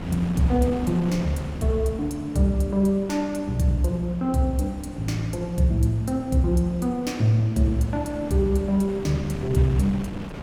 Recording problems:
wind on the microphone; below 580 Hz, SNR 14 dB

